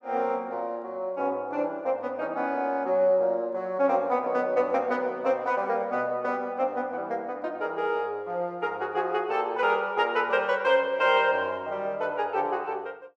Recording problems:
none

